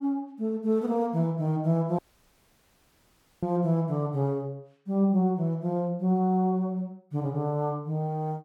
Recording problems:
audio cutting out; at 2 s for 1.5 s

